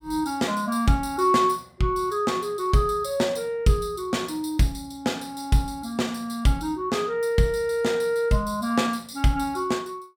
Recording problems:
none

